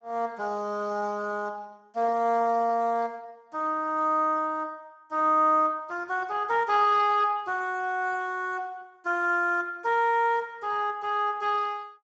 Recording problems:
codec artefacts; Speex, log-spectral distance 2 dB

